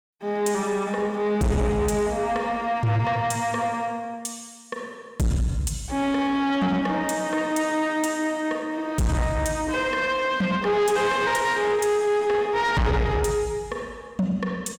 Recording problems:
distorted audio; soft clipping, signal-to-distortion ratio 7 dB

